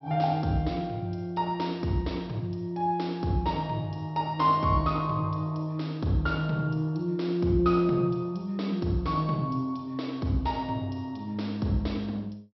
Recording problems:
treble cut off; nothing above 5.5 kHz

